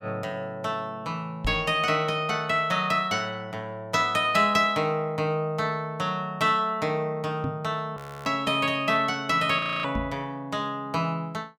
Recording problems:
microphone thump; at 1.5 s, at 7.5 s and at 10 s; peak -1 dB vs average level
frozen audio; at 8 s and at 9.5 s

